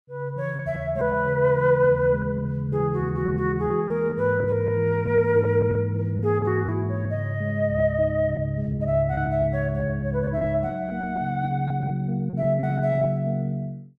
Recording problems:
lost packets; 6% of the sound replaced, filled with repeated pitch periods

